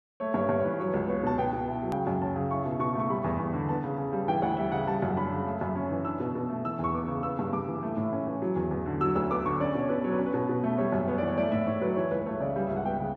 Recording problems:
click at an edit; at 2 s

